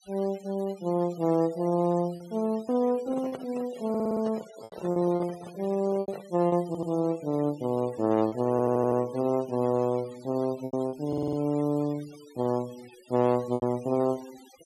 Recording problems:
denoising artefacts; signal-to-artefact ratio 22 dB
lost packets; 5% of the sound replaced, filled with repeated pitch periods
handling noise; from 3 to 6.5 s; peak -7 dB vs average level
stutter; 4 times, first at 4 s

